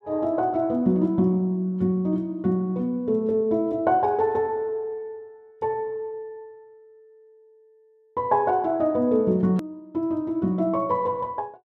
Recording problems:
hard cut with a click; at 9.5 s

